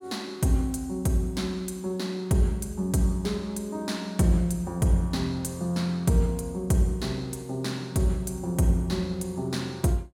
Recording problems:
none

